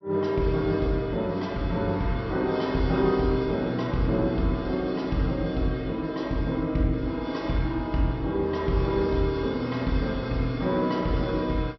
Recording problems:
treble cut off; nothing above 5.8 kHz

